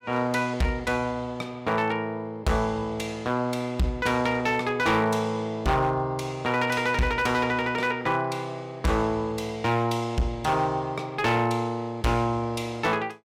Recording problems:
distorted audio; hard clipping, signal-to-distortion ratio 11 dB

